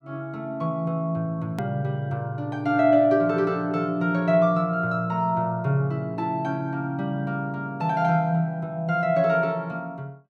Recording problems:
edit click; at 1.5 s

